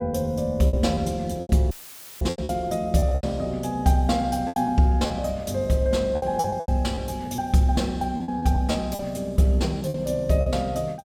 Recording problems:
lost packets; 11% of the sound replaced, filled with repeated pitch periods
audio cutting out; at 1.5 s for 0.5 s; filled with static

